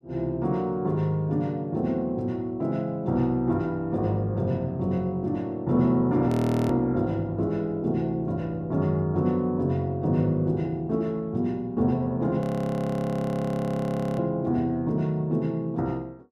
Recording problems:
audio freezing; at 6.5 s and at 12 s for 2 s

